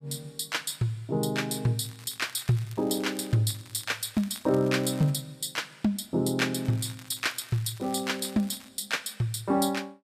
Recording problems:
crackling; from 2 to 3.5 s, from 3.5 to 5 s and from 6.5 to 8.5 s; loose cable, SNR 21 dB

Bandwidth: 14.5 kHz